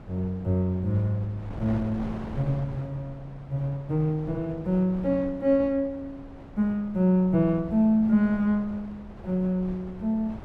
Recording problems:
wind on the microphone; below 440 Hz, SNR 16 dB

